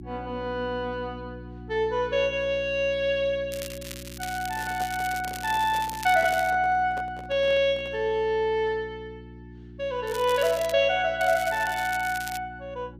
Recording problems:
hum; 60 Hz, harmonics up to 360 Hz, SNR 17 dB
crackle; from 3.5 to 6.5 s, at 10 s and from 11 to 12 s; loose cable, SNR 14 dB
microphone handling noise; from 4.5 to 8 s; peak -10 dB vs average level

